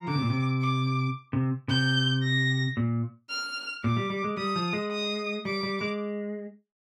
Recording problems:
none

